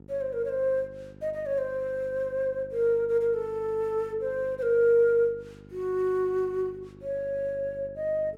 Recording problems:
electrical hum; 50 Hz, harmonics up to 850 Hz, SNR 22 dB

